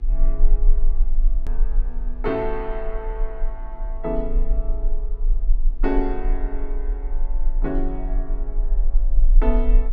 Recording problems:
hum; 60 Hz, harmonics up to 2 kHz, SNR 24 dB
rumble; below 34 Hz, strongest tone 20 Hz, SNR -4 dB
hard cut with a click; at 1.5 s

